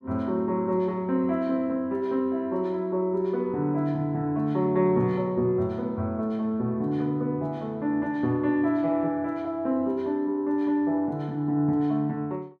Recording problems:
none

